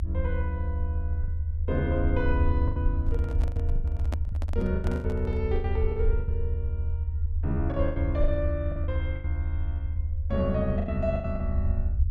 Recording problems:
low-frequency rumble; below 80 Hz, SNR -3 dB
lost packets; 11% of the sound replaced, filled with the last packet
handling noise; from 3 to 5.5 s; peak 0 dB vs average level

